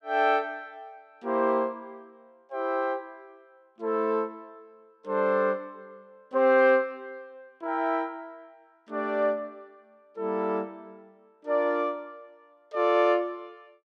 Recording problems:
none

